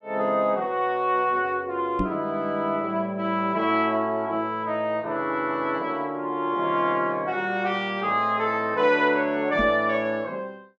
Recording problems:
microphone bump; at 2 s and at 9.5 s; peak +1 dB vs average level

